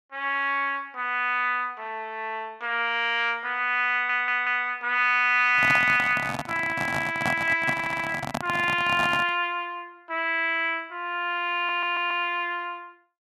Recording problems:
stutter; at 4 s, at 7.5 s and at 12 s
handling noise; from 5.5 to 9.5 s; peak 0 dB vs average level

